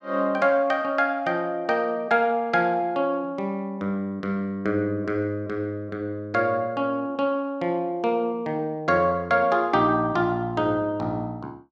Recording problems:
none

